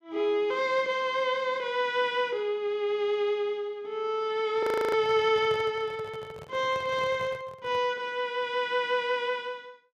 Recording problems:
handling noise; from 4.5 to 8 s; peak -10 dB vs average level
frozen audio; at 4.5 s

